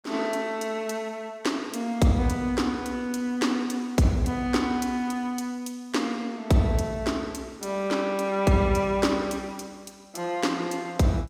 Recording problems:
none

